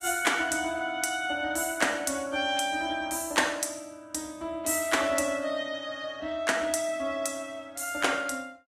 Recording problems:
lossy compression; Vorbis, log-spectral distance 4 dB, nothing above 14.3 kHz

